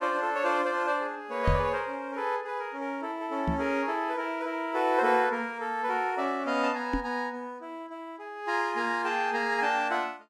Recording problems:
microphone bump; at 1.5 s, at 3.5 s and at 7 s; peak +5 dB vs average level

